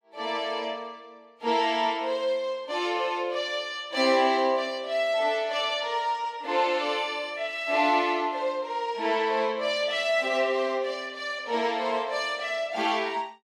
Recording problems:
none

